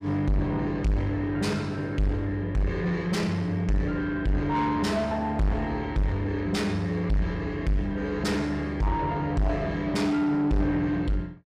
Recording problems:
distortion; soft clipping, signal-to-distortion ratio 6 dB

